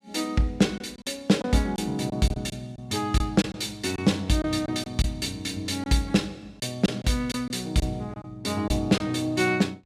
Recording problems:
packet loss; 6% of the sound replaced, filled with silence

